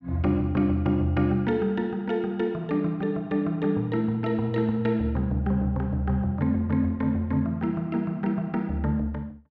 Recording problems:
none

